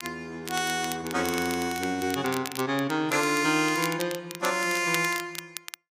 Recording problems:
crackle; vinyl, SNR 11 dB

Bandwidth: 15 kHz